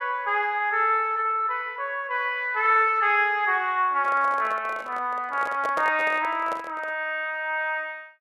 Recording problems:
handling noise; from 4 to 7 s; peak -4 dB vs average level

